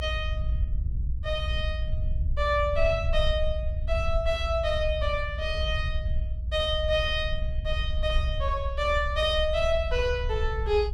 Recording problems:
rumble; below 74 Hz, SNR 3 dB

